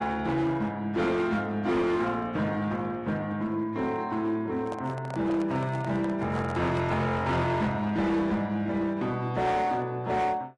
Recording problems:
codec artefacts; AAC, log-spectral distance 2 dB, nothing above 10.4 kHz
distorted audio; hard clipping, signal-to-distortion ratio 11 dB
handling noise; from 4.5 to 7 s; peak -6 dB vs average level

